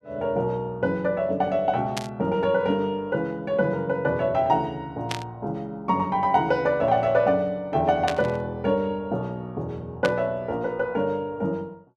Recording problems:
static burst; 4 times, first at 2 s; peak +1 dB vs average level

